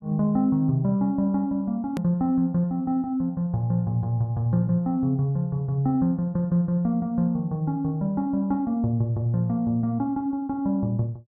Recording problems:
click at an edit; at 2 s

